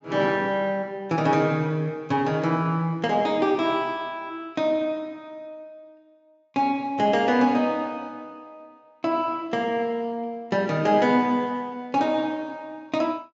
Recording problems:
treble missing; nothing above 8 kHz

